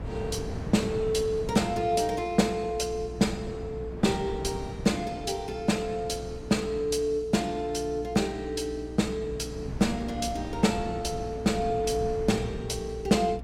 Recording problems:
hum; 60 Hz, harmonics up to 420 Hz, SNR 15 dB
wind noise; below 300 Hz, SNR 12 dB

